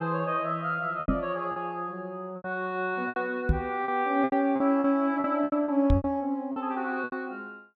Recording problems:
lost packets; 11% of the sound replaced, filled with repeated pitch periods
knock on the microphone; at 1 s, at 3.5 s and at 6 s; peak +7 dB vs average level

